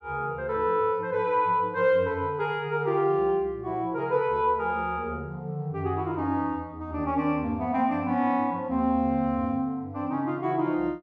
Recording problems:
none

